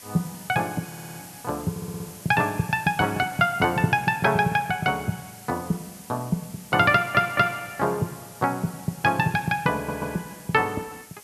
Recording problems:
background hiss; slope 0 dB per octave, SNR 19 dB
stutter; 4 times, first at 1 s

